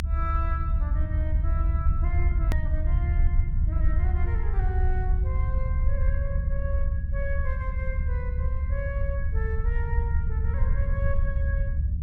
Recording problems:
low-frequency rumble; below 72 Hz, SNR -11 dB
edit click; at 2.5 s

